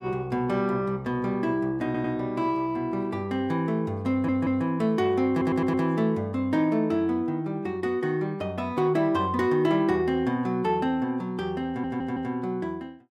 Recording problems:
audio stuttering; 4 times, first at 2 s

